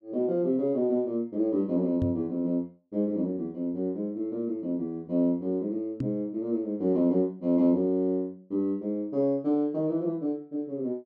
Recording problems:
microphone thump; at 2 s and at 6 s; peak +1 dB vs average level

